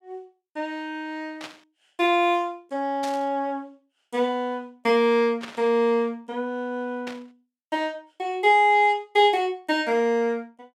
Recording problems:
burst of static; 4 times, first at 1.5 s; peak -8 dB vs average level

